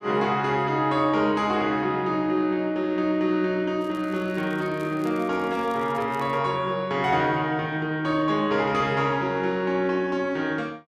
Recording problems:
crackling; from 4 to 6.5 s; loose cable, SNR 28 dB

